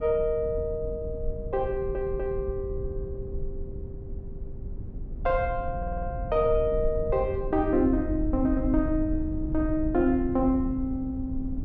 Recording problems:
rumble; below 90 Hz, SNR 8 dB
audio stuttering; at 1.5 s and at 6 s

